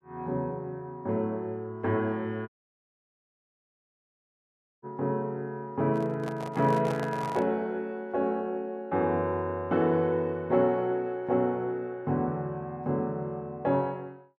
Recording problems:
audio cutting out; at 2.5 s for 2.5 s
microphone handling noise; from 6 to 7.5 s; peak -3 dB vs average level

